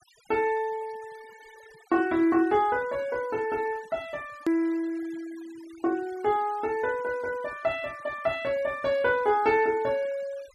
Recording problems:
denoising artefacts; signal-to-artefact ratio 23 dB
click at an edit; at 4.5 s

